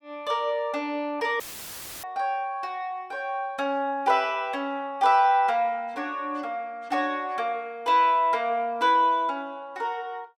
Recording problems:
dropout; at 1.5 s for 0.5 s; filled with static

